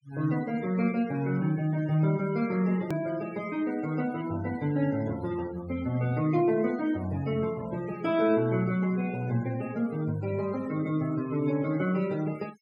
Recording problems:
denoising artefacts; signal-to-artefact ratio 19 dB
hard cut with a click; at 3 s

